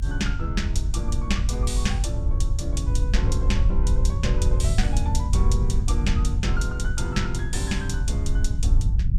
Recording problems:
rumble; below 76 Hz, SNR -5 dB

